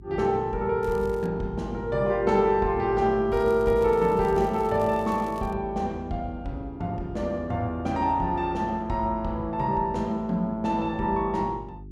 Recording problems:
mains hum; 50 Hz, harmonics up to 400 Hz, SNR 18 dB
crackling; at 1 s and from 3.5 to 5.5 s; loose cable, SNR 26 dB

